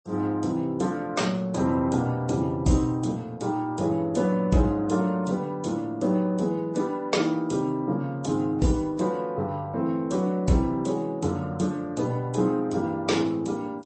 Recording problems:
codec artefacts; AAC, then MP3, log-spectral distance 2 dB, nothing above 8.2 kHz

